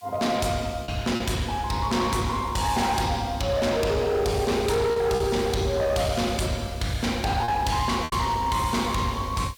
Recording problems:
distorted audio; hard clipping, signal-to-distortion ratio 10 dB
hiss; SNR 26 dB
lost packets; 3% of the sound replaced, filled with repeated pitch periods

